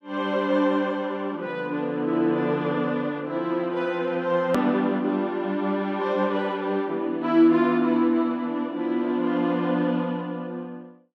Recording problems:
click at an edit; at 4.5 s

